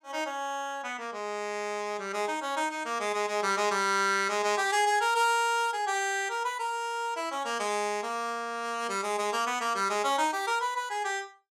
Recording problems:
none

